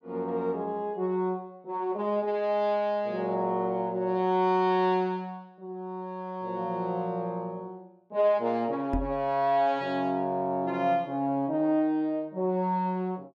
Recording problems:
knock on the microphone; at 9 s; peak +4 dB vs average level

